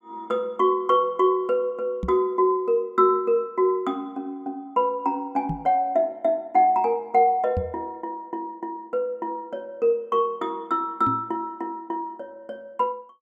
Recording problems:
microphone bump; 4 times, first at 2 s; peak -1 dB vs average level

